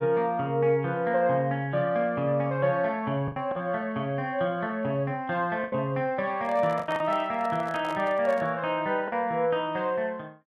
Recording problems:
packet loss; 3% of the sound replaced, filled with the last packet
microphone handling noise; from 6.5 to 8.5 s; peak -7 dB vs average level

